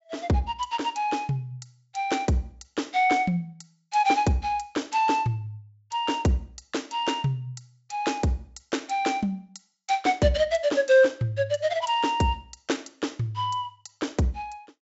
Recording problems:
low-pass filter; nothing above 8 kHz

